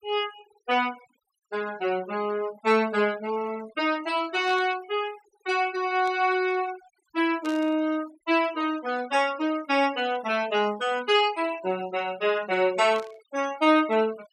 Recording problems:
noise reduction artefacts; signal-to-artefact ratio 20 dB
burst of static; 4 times, first at 4.5 s; peak -13 dB vs average level

